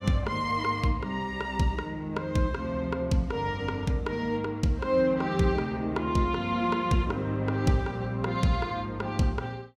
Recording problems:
none

